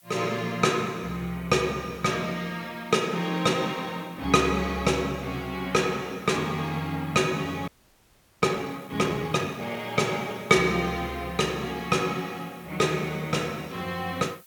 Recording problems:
hiss; slope +2 dB per octave, SNR 26 dB
frozen audio; at 7.5 s for 0.5 s

